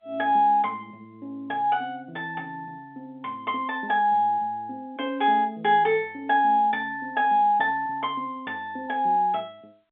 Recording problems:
telephone audio; 240 Hz to 3.6 kHz, G.711

